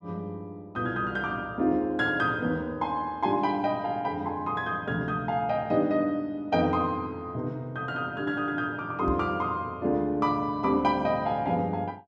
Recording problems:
microphone bump; at 9 s; peak 0 dB vs average level

